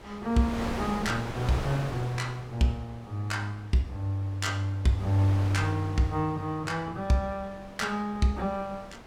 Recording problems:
wind noise; below 1.2 kHz, SNR 11 dB

